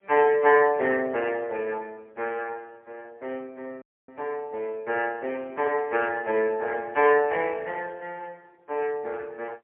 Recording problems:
telephone audio; 320 Hz to 3.1 kHz, AMR-NB, then MP3
dropout; at 4 s

